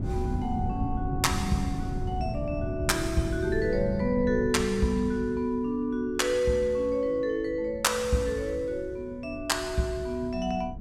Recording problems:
wind noise; below 170 Hz, SNR 7 dB

